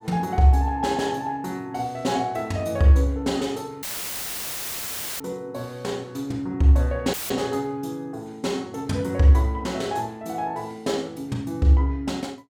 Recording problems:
audio cutting out; at 4 s for 1.5 s and at 7 s; filled with static

